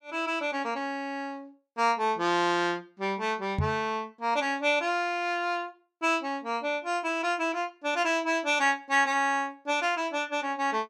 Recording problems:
microphone bump; at 3.5 s; peak +3 dB vs average level

